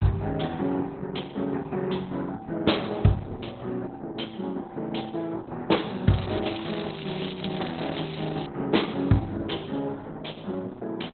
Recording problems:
lossy codec; Opus, log-spectral distance 8 dB, nothing above 4 kHz
crackling; from 6 to 8.5 s; loose cable, SNR 11 dB

